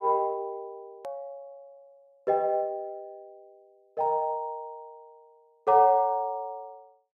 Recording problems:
click at an edit; at 1 s

